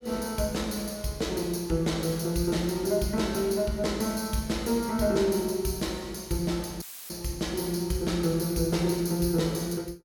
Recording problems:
dropout; at 7 s; filled with static

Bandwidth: 17 kHz